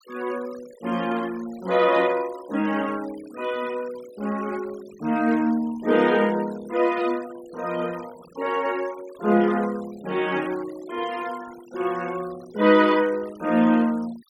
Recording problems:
noise reduction artefacts; signal-to-artefact ratio 21 dB

